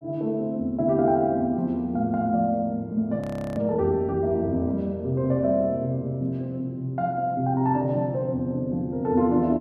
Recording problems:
audio freezing; at 3 s

